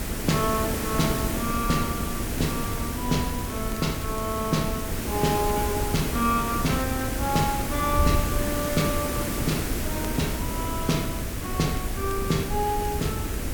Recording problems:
background hiss; SNR 2 dB
wind noise; below 90 Hz, SNR 6 dB
crackle; vinyl, SNR 24 dB

